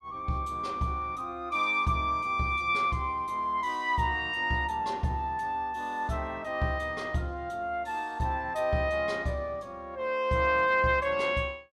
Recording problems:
none

